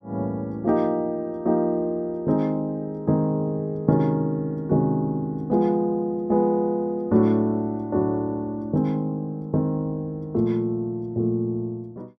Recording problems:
none

